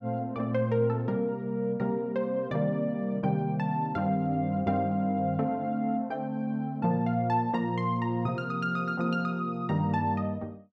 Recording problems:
none

